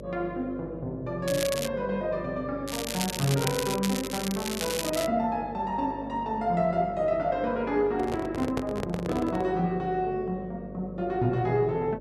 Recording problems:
hum; 50 Hz, harmonics up to 600 Hz, SNR 13 dB
crackle; at 1.5 s and from 2.5 to 5 s; loose cable, SNR 5 dB
handling noise; from 8 to 9.5 s; peak +1 dB vs average level

